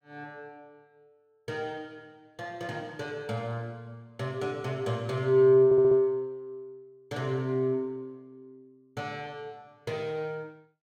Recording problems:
stutter; at 5.5 s

